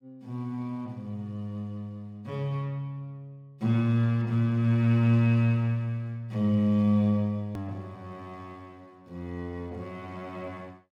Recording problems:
hard cut with a click; at 7.5 s

